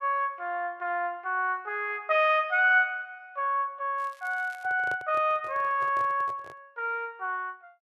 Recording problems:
crackle; at 4 s; loose cable, SNR 29 dB
handling noise; from 4.5 to 6.5 s; peak -10 dB vs average level

